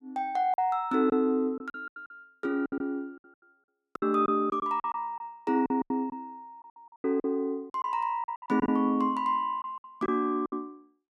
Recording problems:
packet loss; 13% of the sound replaced, filled with silence

